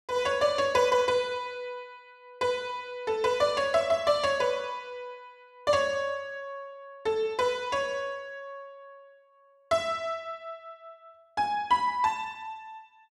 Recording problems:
none

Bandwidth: 12 kHz